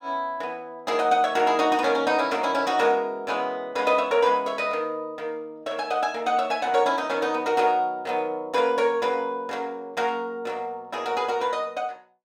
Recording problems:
none

